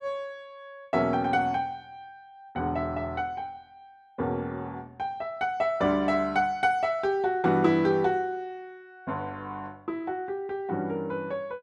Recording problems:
none

